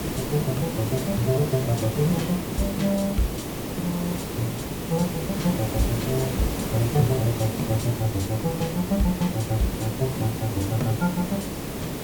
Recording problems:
hiss; SNR 3 dB

